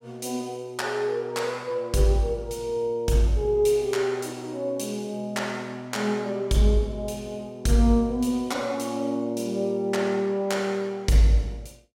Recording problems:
none

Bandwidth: 17 kHz